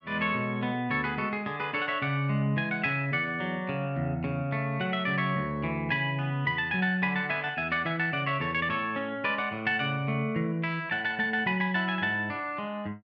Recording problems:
none

